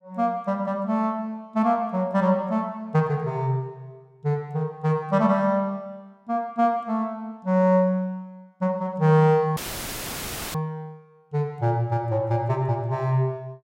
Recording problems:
audio cutting out; at 9.5 s for 1 s; filled with static

